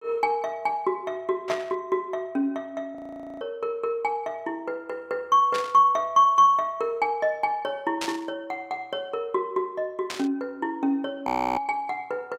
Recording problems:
static burst; 4 times, first at 1.5 s; peak -1 dB vs average level
audio freezing; at 3 s and at 11 s

